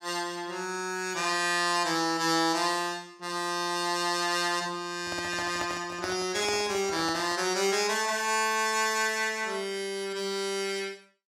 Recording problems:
microphone handling noise; from 5 to 7.5 s; peak -5 dB vs average level

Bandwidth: 16 kHz